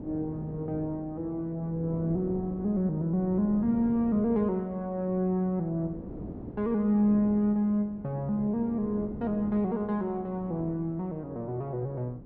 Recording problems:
wind noise; below 360 Hz, SNR 14 dB

